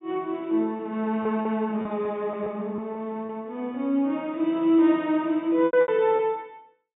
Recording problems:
treble missing; nothing above 4 kHz
packet loss; 6% of the sound replaced, filled with repeated pitch periods

